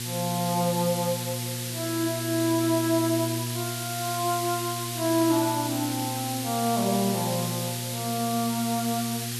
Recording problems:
electrical hum; 60 Hz, harmonics up to 480 Hz, SNR 7 dB
background hiss; SNR 4 dB

